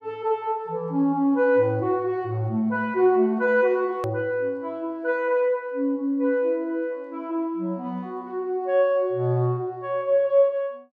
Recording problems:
edit click; at 4 s

